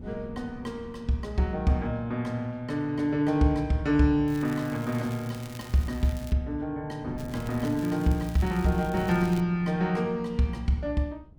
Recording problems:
wind on the microphone; below 230 Hz, SNR 19 dB
crackling; from 4.5 to 6.5 s and from 7 to 9.5 s; loose cable, SNR 20 dB

